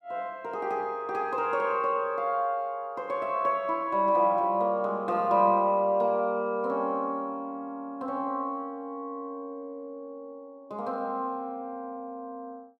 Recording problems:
none

